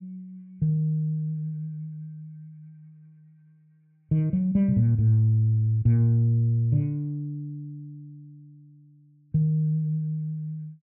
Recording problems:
none

